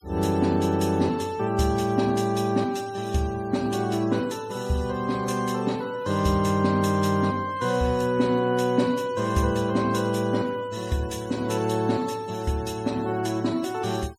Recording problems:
denoising artefacts; signal-to-artefact ratio 22 dB

